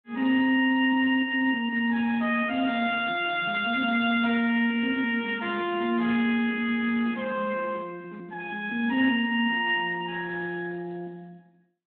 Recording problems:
phone line; 190 Hz to 3.7 kHz, Speex

